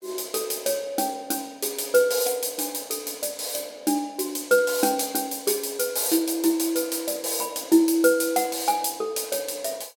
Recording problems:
none

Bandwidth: 17.5 kHz